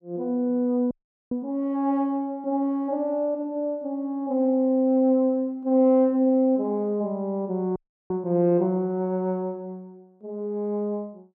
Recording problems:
audio freezing; at 1 s and at 8 s

